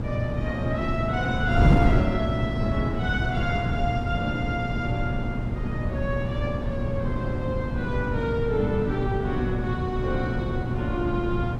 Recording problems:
mains hum; 60 Hz, harmonics up to 840 Hz, SNR 4 dB
wind noise; below 220 Hz, SNR -1 dB

